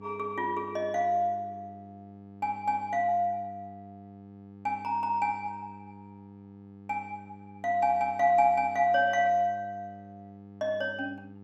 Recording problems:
hum; 50 Hz, harmonics up to 900 Hz, SNR 20 dB

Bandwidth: 14 kHz